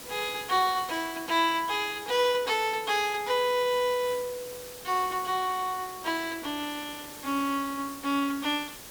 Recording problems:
background hiss; slope -2 dB per octave, SNR 14 dB

